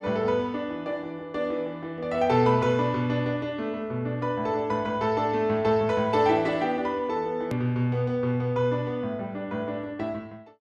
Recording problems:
click at an edit; at 7.5 s

